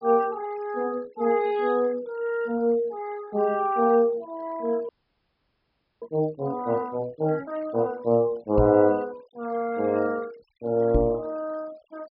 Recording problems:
treble cut off; nothing above 5.3 kHz
denoising artefacts; signal-to-artefact ratio 25 dB
audio freezing; at 5 s for 1 s
microphone thump; at 8.5 s and at 11 s; peak +4 dB vs average level

